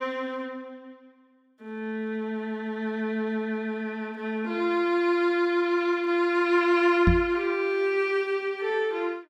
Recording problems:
microphone bump; at 7 s; peak +7 dB vs average level

